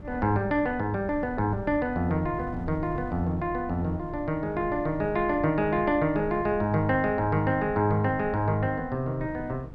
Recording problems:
wind on the microphone; below 150 Hz, SNR 15 dB

